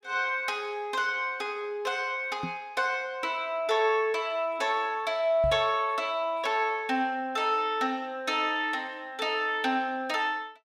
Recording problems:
knock on the microphone; at 2.5 s and at 5.5 s; peak -3 dB vs average level

